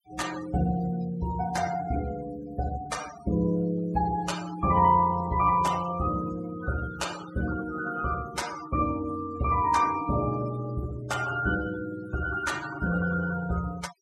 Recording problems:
denoising artefacts; signal-to-artefact ratio 15 dB

